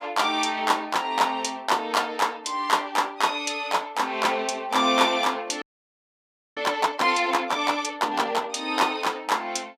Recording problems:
frozen audio; at 5.5 s for 1 s

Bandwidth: 15.5 kHz